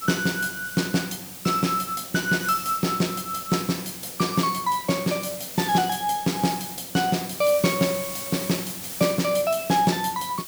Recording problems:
hiss; slope 0 dB per octave, SNR 10 dB

